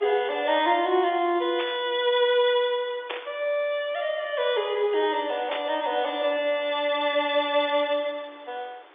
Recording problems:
telephone audio; 300 Hz to 3.7 kHz, G.711
hiss; SNR 27 dB
burst of static; at 1.5 s, at 3 s and at 5.5 s; peak -3 dB vs average level

